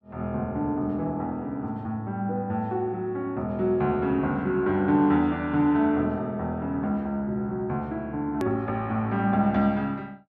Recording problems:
hard cut with a click; at 8.5 s

